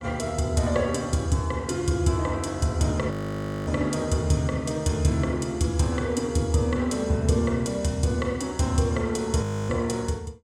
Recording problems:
frozen audio; at 3 s for 0.5 s and at 9.5 s

